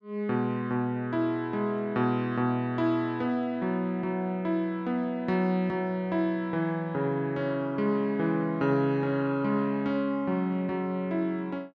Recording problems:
none

